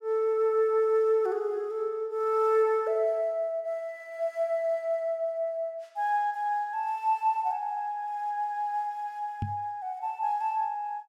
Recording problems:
microphone bump; at 9.5 s; peak 0 dB vs average level

